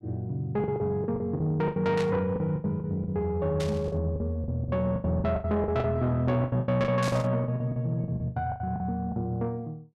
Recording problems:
distorted audio; soft clipping, signal-to-distortion ratio 11 dB
lost packets; 17% of the sound replaced, filled with the last packet
static burst; at 2 s, at 3.5 s and at 7 s; peak -5 dB vs average level

